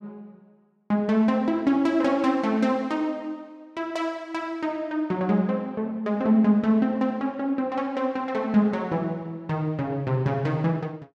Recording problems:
none

